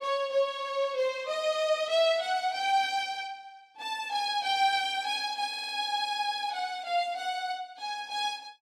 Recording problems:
stutter; at 5.5 s

